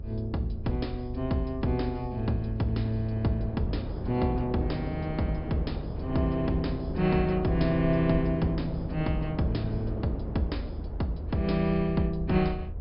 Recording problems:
treble missing; nothing above 5.5 kHz
electrical hum; 60 Hz, harmonics up to 720 Hz, SNR 31 dB
low-frequency rumble; below 78 Hz, SNR 10 dB
wind noise; below 390 Hz, SNR 9 dB

